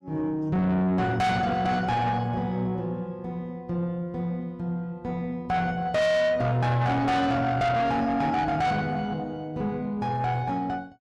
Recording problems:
distorted audio; soft clipping, signal-to-distortion ratio 6 dB

